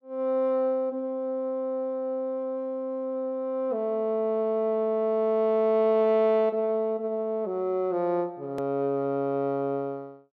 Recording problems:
click at an edit; at 8.5 s

